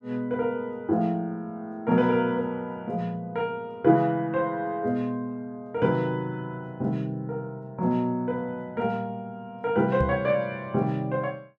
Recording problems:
knock on the microphone; at 10 s; peak +3 dB vs average level

